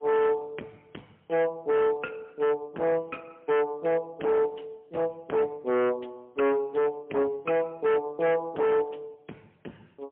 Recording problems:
phone line; 750 Hz to 2.6 kHz, AMR-NB, then MP3
distorted audio; hard clipping, signal-to-distortion ratio 8 dB

